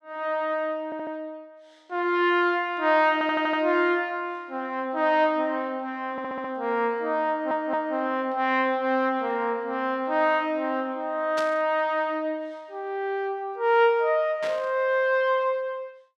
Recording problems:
audio stuttering; 4 times, first at 1 s
static burst; at 11 s and at 14 s; peak -5 dB vs average level

